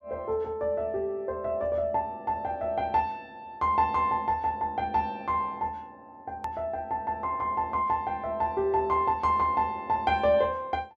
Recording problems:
hard cut with a click; at 6.5 s

